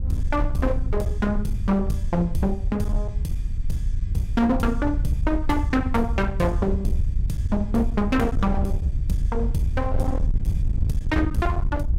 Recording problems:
distortion; hard clipping, signal-to-distortion ratio 12 dB
wind noise; below 82 Hz, SNR 1 dB

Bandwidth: 16 kHz